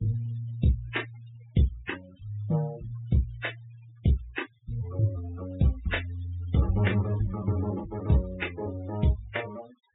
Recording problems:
treble cut off; nothing above 4 kHz
noise reduction artefacts; signal-to-artefact ratio 16 dB

